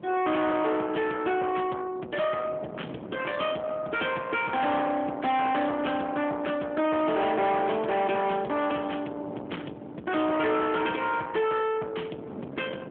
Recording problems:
phone line; 260 Hz to 3.4 kHz, AMR-NB
distorted audio; soft clipping, signal-to-distortion ratio 8 dB
wind on the microphone; below 1.1 kHz, SNR 15 dB

